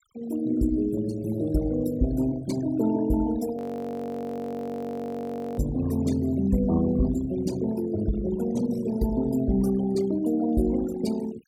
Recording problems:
noise reduction artefacts; signal-to-artefact ratio 17 dB
frozen audio; at 3.5 s for 2 s

